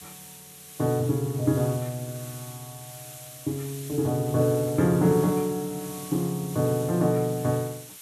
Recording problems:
background hiss; slope +2 dB per octave, SNR 15 dB

